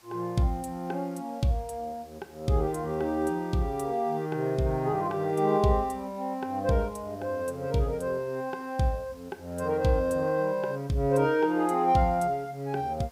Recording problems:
background hiss; slope -2 dB per octave, SNR 28 dB

